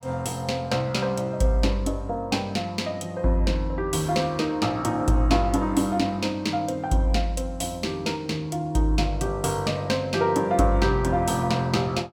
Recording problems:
none

